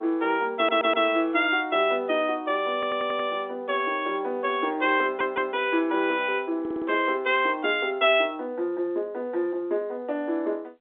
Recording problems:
phone line; 260 Hz to 3.6 kHz, G.711
audio stuttering; 4 times, first at 0.5 s

